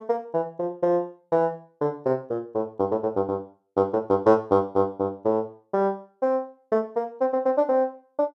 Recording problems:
none

